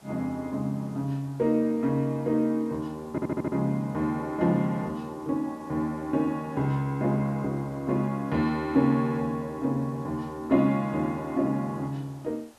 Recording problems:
background hiss; SNR 28 dB
stutter; at 3 s

